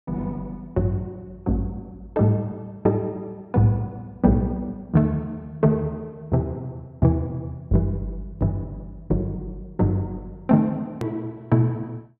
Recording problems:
edit click; at 11 s

